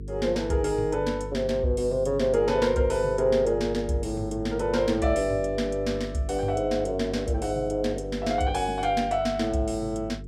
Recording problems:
electrical hum; 50 Hz, harmonics up to 450 Hz, SNR 12 dB

